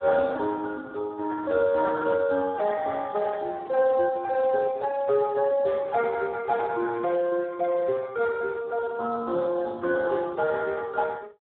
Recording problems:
phone line; 280 Hz to 2.1 kHz, Speex
microphone handling noise; from 3 to 6.5 s; peak -12 dB vs average level

